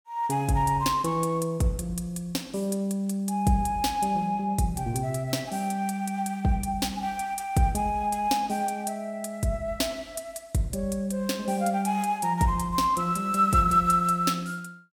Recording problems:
none

